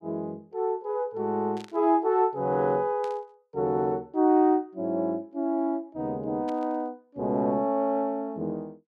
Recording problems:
burst of static; at 1.5 s, at 3 s and at 6.5 s; peak -14 dB vs average level

